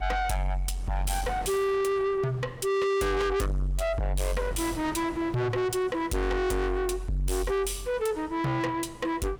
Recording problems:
distortion; soft clipping, signal-to-distortion ratio 6 dB
wind noise; below 750 Hz, SNR 17 dB

